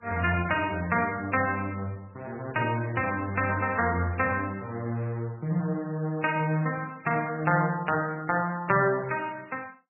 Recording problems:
lossy codec; MP3, log-spectral distance 4 dB, nothing above 2.5 kHz

